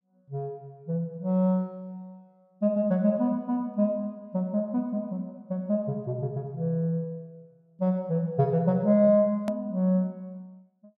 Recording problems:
hard cut with a click; at 9.5 s

